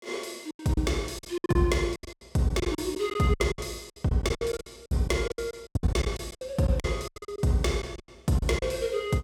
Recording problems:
lost packets; 19% of the sound replaced, filled with silence

